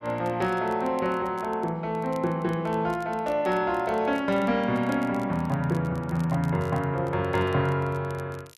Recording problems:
crackling; vinyl, SNR 27 dB

